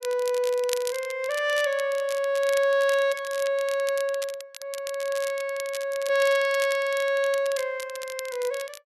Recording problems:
crackling; vinyl, SNR 14 dB

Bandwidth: 12.5 kHz